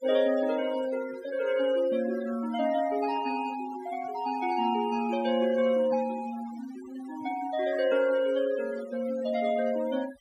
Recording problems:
denoising artefacts; signal-to-artefact ratio 15 dB

